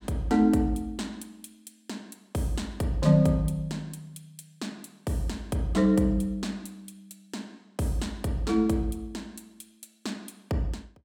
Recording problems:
none

